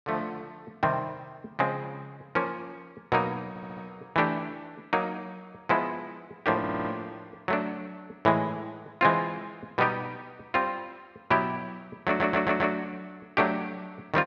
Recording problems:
audio stuttering; at 3.5 s, at 6.5 s and at 12 s

